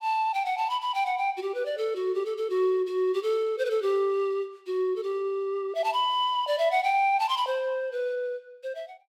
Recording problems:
none

